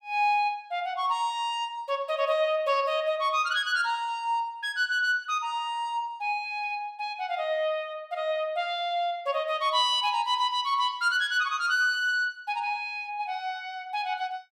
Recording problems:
none

